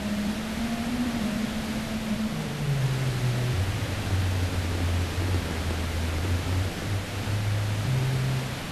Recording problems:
hiss; slope -3 dB per octave, SNR 3 dB
handling noise; from 4 to 7 s; peak -3 dB vs average level

